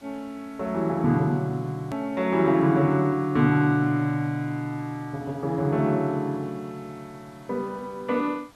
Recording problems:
hiss; slope -3 dB per octave, SNR 29 dB
click at an edit; at 2 s

